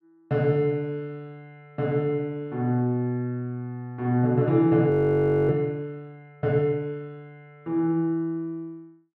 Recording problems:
frozen audio; at 5 s for 0.5 s

